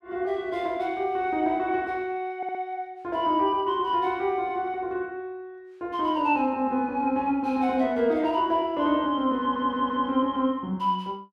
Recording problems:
stutter; at 2.5 s and at 9.5 s

